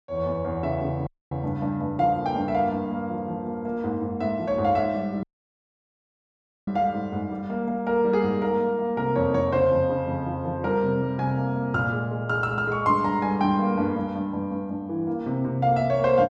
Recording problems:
dropout; at 1 s and at 5 s for 1.5 s

